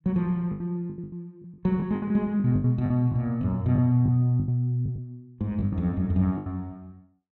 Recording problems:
lost packets; 13% of the sound replaced, filled with the last packet

